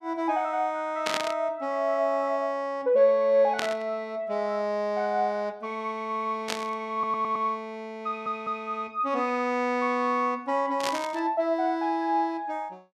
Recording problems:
burst of static; 4 times, first at 1 s; peak +2 dB vs average level
audio stuttering; at 7 s and at 8 s

